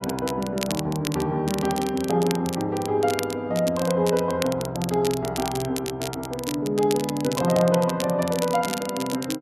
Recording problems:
crackle; vinyl, SNR 10 dB

